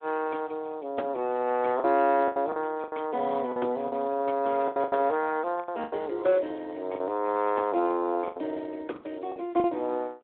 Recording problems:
telephone audio; 260 Hz to 3.6 kHz, Speex
packet loss; 9% of the sound replaced, filled with the last packet

